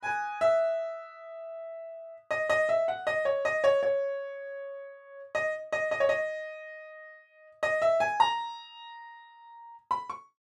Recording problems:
none

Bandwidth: 13.5 kHz